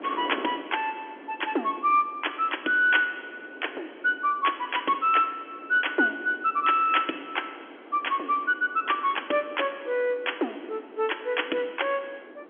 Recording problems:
phone line; 260 Hz to 3.4 kHz, G.711
wind on the microphone; below 670 Hz, SNR 19 dB

